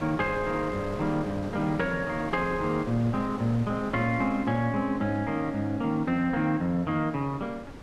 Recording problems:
wind on the microphone; below 810 Hz, SNR 13 dB

